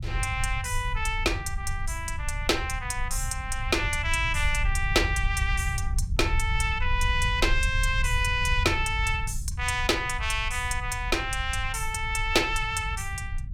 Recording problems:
low-frequency rumble; below 80 Hz, SNR 5 dB

